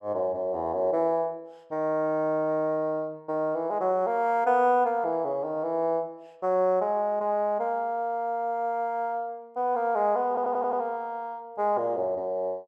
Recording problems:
audio stuttering; at 10 s

